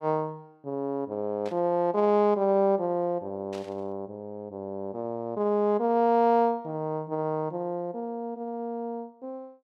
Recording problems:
static burst; at 1.5 s and at 3.5 s; peak -13 dB vs average level

